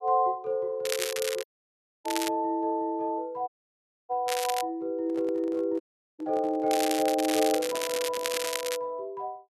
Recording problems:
crackling; from 1 to 2.5 s, at 4.5 s and from 6.5 to 9 s; loose cable, SNR 4 dB
dropout; at 1.5 s for 0.5 s, at 3.5 s for 0.5 s and at 6 s
microphone handling noise; from 5 to 8.5 s; peak -11 dB vs average level

